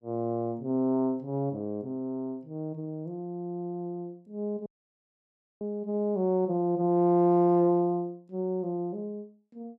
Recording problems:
dropout; at 4.5 s for 1 s

